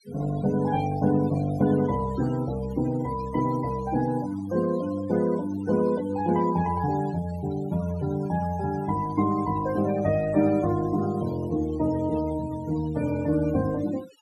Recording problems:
noise reduction artefacts; signal-to-artefact ratio 17 dB

